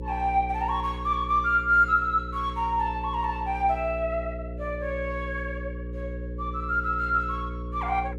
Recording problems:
hum; 60 Hz, harmonics up to 540 Hz, SNR 9 dB

